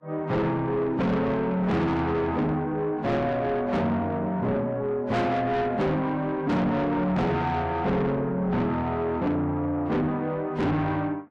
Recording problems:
lossy codec; Vorbis, log-spectral distance 2 dB, nothing above 13.1 kHz
distorted audio; soft clipping, signal-to-distortion ratio 6 dB

